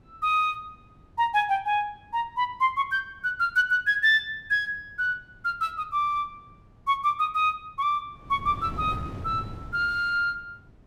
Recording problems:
wind noise; below 240 Hz, SNR 15 dB

